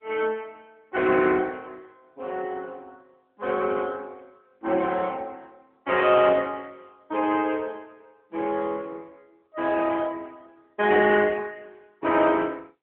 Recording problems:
phone line; 220 Hz to 3.3 kHz, AMR-NB

